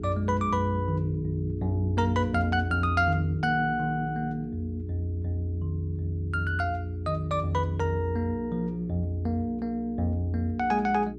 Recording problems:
mains hum; 60 Hz, harmonics up to 420 Hz, SNR 11 dB

